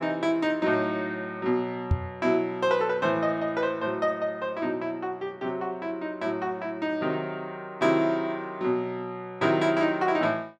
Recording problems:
knock on the microphone; at 2 s; peak +6 dB vs average level

